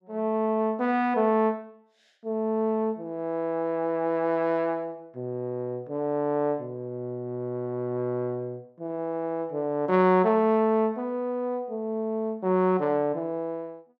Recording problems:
none

